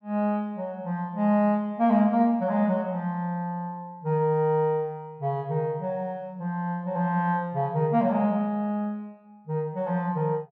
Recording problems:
none

